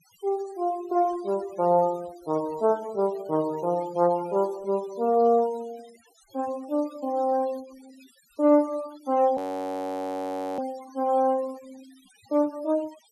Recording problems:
noise reduction artefacts; signal-to-artefact ratio 23 dB
audio freezing; at 9.5 s for 1 s

